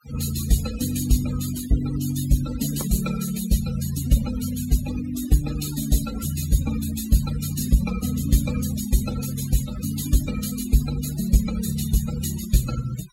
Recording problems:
denoising artefacts; signal-to-artefact ratio 11 dB

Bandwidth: 16.5 kHz